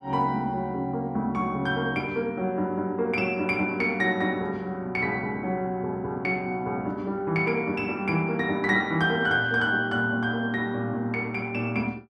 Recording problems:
none

